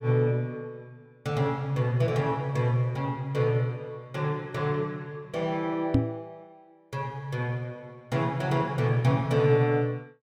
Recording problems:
knock on the microphone; at 6 s; peak +8 dB vs average level

